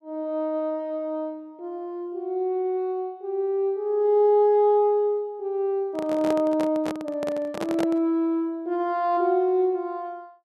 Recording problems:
microphone handling noise; from 6 to 8 s; peak -2 dB vs average level

